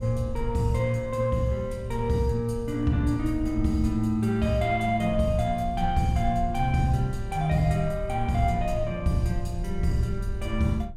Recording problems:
rumble; below 74 Hz, SNR 10 dB

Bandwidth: 16.5 kHz